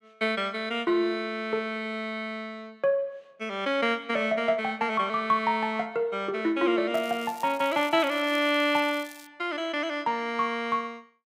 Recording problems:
crackling; from 7 to 9.5 s; loose cable, SNR 21 dB

